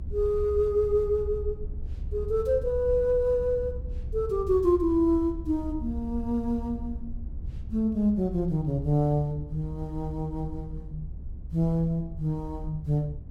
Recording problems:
rumble; below 70 Hz, SNR 11 dB

